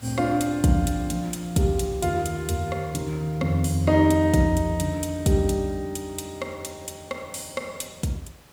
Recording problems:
background hiss; slope -4 dB per octave, SNR 24 dB

